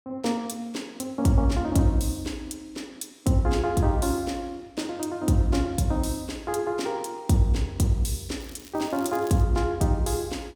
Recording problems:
crackle; from 8.5 to 9.5 s; loose cable, SNR 20 dB

